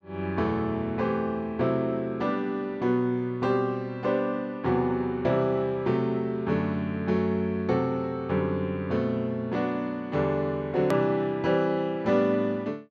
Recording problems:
treble missing; nothing above 8 kHz
hard cut with a click; at 11 s

